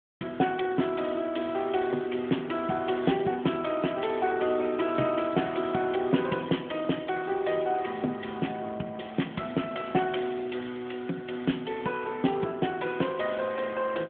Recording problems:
telephone audio; 150 Hz to 3.4 kHz, AMR-NB

